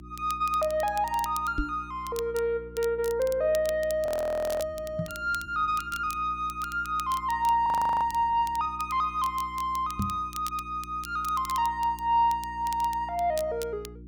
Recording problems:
electrical hum; 60 Hz, harmonics up to 360 Hz, SNR 18 dB
crackle; vinyl, SNR 17 dB
microphone thump; at 1.5 s, at 5 s and at 10 s; peak +1 dB vs average level
frozen audio; at 4 s for 0.5 s and at 7.5 s

